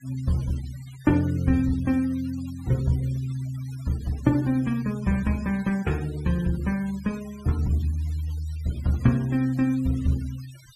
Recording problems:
noise reduction artefacts; signal-to-artefact ratio 22 dB

